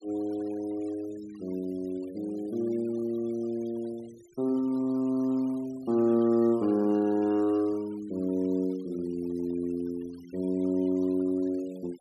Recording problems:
denoising artefacts; signal-to-artefact ratio 25 dB

